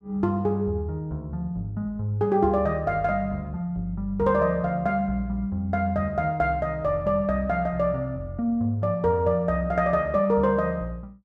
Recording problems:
none

